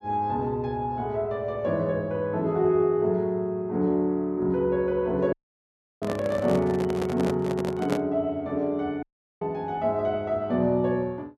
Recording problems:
audio cutting out; at 5.5 s for 0.5 s and at 9 s
handling noise; from 6 to 8 s; peak +1 dB vs average level

